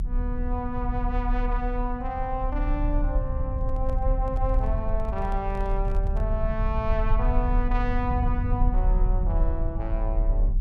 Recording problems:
rumble; below 56 Hz, strongest tone 36 Hz, SNR -3 dB
handling noise; from 3.5 to 6.5 s; peak -8 dB vs average level

